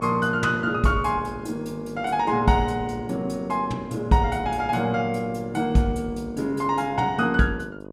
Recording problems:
electrical hum; 50 Hz, harmonics up to 1.1 kHz, SNR 15 dB

